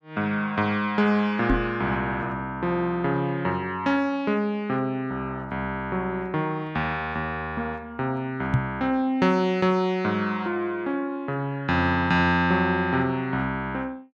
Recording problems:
knock on the microphone; at 1.5 s and at 8.5 s; peak +7 dB vs average level

